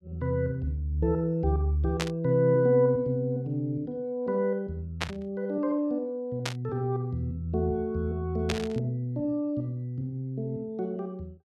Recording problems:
burst of static; 4 times, first at 2 s; peak +3 dB vs average level

